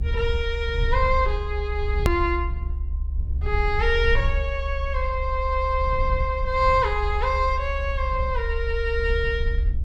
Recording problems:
low-frequency rumble; below 68 Hz, SNR 3 dB
click at an edit; at 2 s

